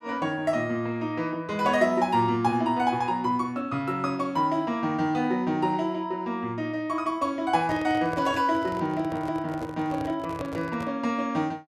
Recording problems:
handling noise; from 7.5 to 11 s; peak -7 dB vs average level

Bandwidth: 14.5 kHz